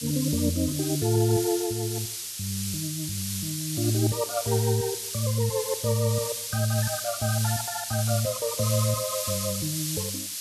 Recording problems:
background hiss; SNR 3 dB

